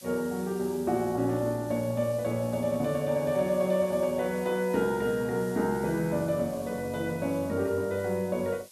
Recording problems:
background hiss; SNR 20 dB

